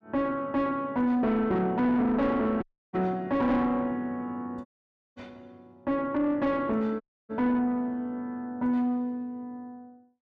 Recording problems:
distortion; soft clipping, signal-to-distortion ratio 9 dB
dropout; at 2.5 s, at 4.5 s for 0.5 s and at 7 s

